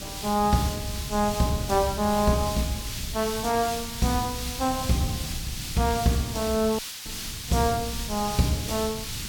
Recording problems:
hiss; slope +4 dB per octave, SNR 7 dB
wind on the microphone; below 150 Hz, SNR 12 dB
dropout; at 7 s

